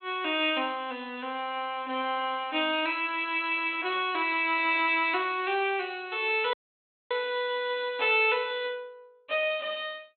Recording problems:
treble cut off; nothing above 4 kHz
dropout; at 6.5 s for 0.5 s

